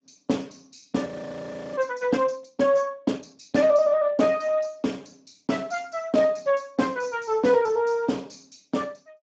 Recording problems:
codec artefacts; Speex, log-spectral distance 4 dB
frozen audio; at 1 s for 0.5 s

